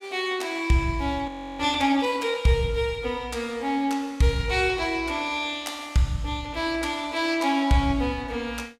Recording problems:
frozen audio; at 1.5 s

